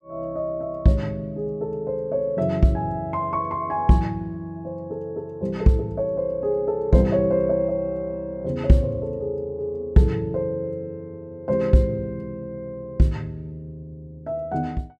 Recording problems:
none

